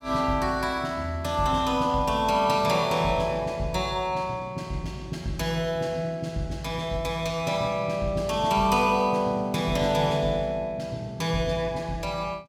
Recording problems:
none

